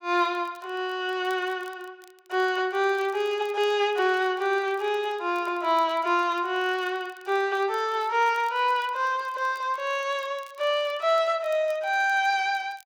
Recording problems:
crackle; vinyl, SNR 30 dB

